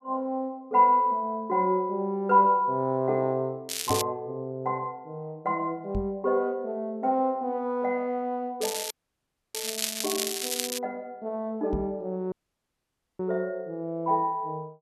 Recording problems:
crackle; at 3.5 s and from 8.5 to 11 s; loose cable, SNR 3 dB
knock on the microphone; at 4 s, at 6 s and at 12 s; peak 0 dB vs average level
dropout; at 9 s for 0.5 s and at 12 s for 1 s

